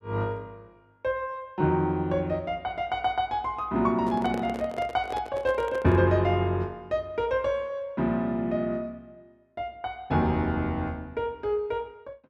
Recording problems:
microphone handling noise; from 4 to 6 s; peak -3 dB vs average level

